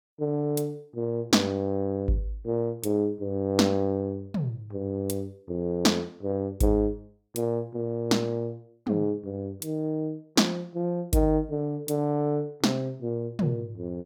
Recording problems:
none

